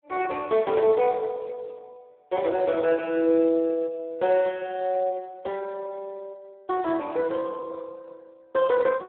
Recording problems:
phone line; 300 Hz to 3.7 kHz, Speex

